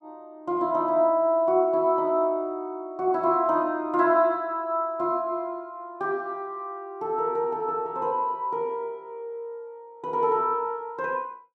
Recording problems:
none

